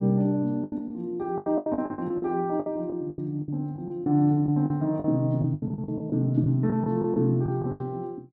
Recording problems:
lost packets; 16% of the sound replaced, filled with the last packet

